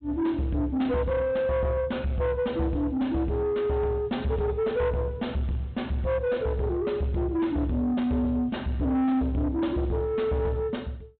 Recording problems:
treble missing; nothing above 4 kHz
distorted audio; soft clipping, signal-to-distortion ratio 11 dB

